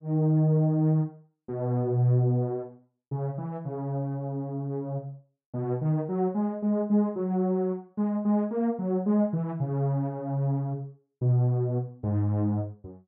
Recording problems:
none

